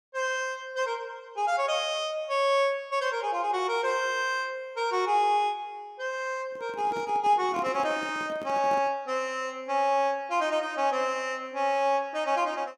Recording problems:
handling noise; from 6.5 to 9 s; peak -7 dB vs average level

